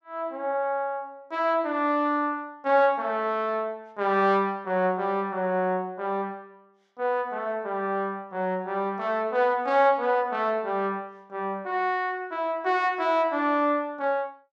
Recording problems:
none

